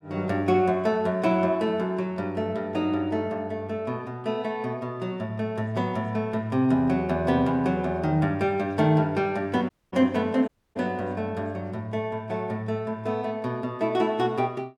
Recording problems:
dropout; at 9.5 s and at 10 s

